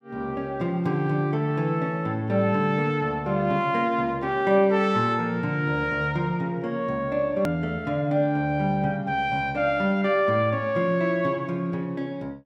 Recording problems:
edit click; at 7.5 s

